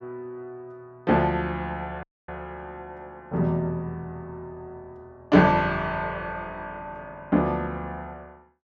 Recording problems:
dropout; at 2 s

